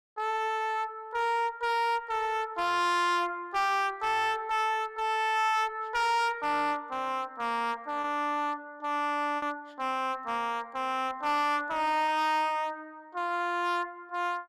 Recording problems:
distorted audio; hard clipping, uneven, signal-to-distortion ratio 6 dB
lost packets; 0.9% of the sound replaced, filled with repeated pitch periods

